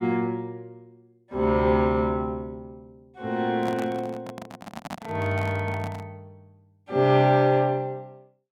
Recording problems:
microphone handling noise; from 3.5 to 6 s; peak -6 dB vs average level

